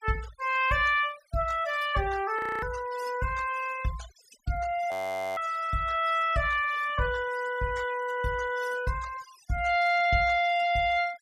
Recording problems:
noise reduction artefacts; signal-to-artefact ratio 17 dB
audio freezing; at 2.5 s and at 5 s

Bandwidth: 15 kHz